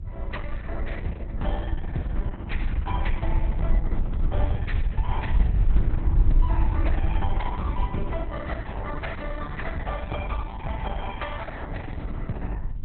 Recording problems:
lossy compression; Opus, log-spectral distance 3 dB, nothing above 3.7 kHz
low-frequency rumble; below 68 Hz, SNR -4 dB
wind on the microphone; below 210 Hz, SNR 10 dB

